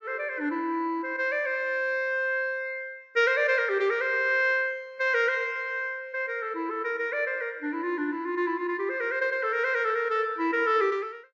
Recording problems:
low-pass filter; nothing above 8 kHz

